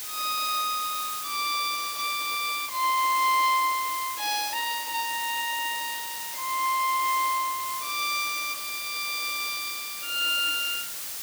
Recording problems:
background hiss; slope +2 dB per octave, SNR 6 dB

